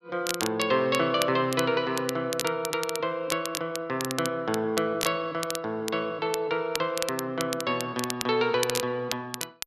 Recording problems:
crackle; vinyl, SNR 7 dB

